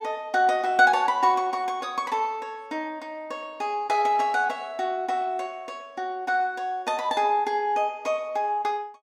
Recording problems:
none

